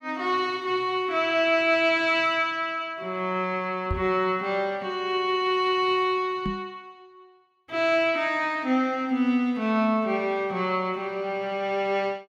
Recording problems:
microphone bump; at 4 s and at 6.5 s; peak -1 dB vs average level

